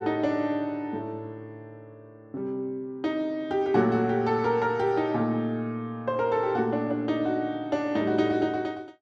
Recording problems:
none

